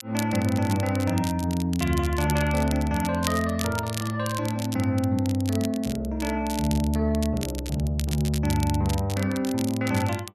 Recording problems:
crackle; vinyl, SNR 12 dB

